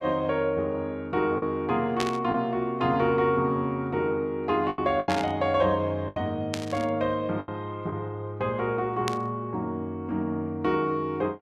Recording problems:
lost packets; 4% of the sound replaced, filled with the last packet
burst of static; 4 times, first at 2 s; peak +1 dB vs average level

